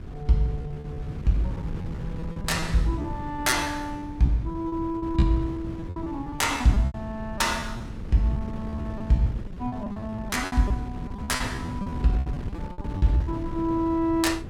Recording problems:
wind on the microphone; below 200 Hz, SNR 9 dB
lost packets; 13% of the sound replaced, filled with repeated pitch periods

